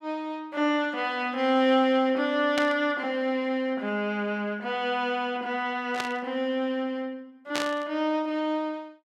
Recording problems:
burst of static; at 2.5 s, at 6 s and at 7.5 s; peak +1 dB vs average level

